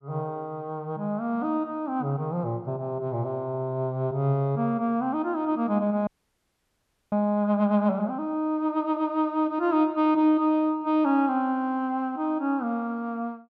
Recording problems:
frozen audio; at 6 s for 1 s

